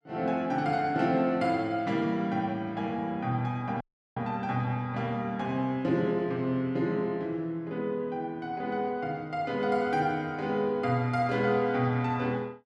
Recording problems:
audio cutting out; at 4 s

